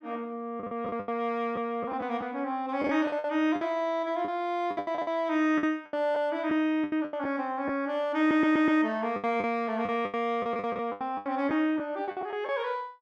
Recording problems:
lost packets; 13% of the sound replaced, filled with the last packet
stutter; at 8 s

